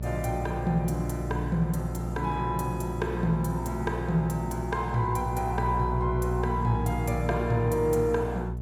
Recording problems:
hum; 60 Hz, harmonics up to 480 Hz, SNR 4 dB

